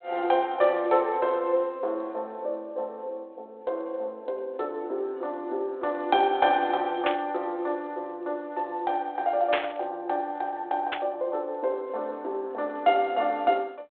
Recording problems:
phone line; 320 Hz to 4 kHz, G.726
burst of static; at 7 s, at 9.5 s and at 11 s; peak +5 dB vs average level

